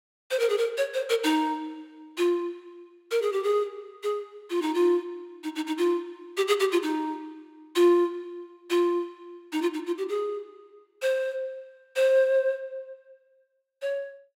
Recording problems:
none

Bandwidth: 16 kHz